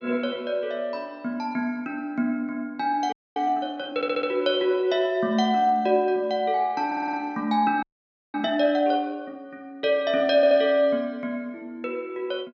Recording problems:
treble missing; nothing above 7.1 kHz
audio freezing; at 3 s and at 8 s for 0.5 s
audio stuttering; at 4 s, at 7 s and at 10 s

